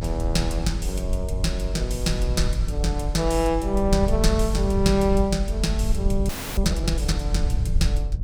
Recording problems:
hum; 50 Hz, harmonics up to 600 Hz, SNR 17 dB
rumble; below 64 Hz, SNR 1 dB
audio freezing; at 6.5 s

